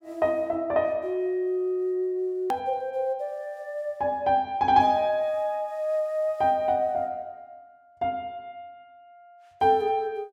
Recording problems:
click at an edit; at 2.5 s

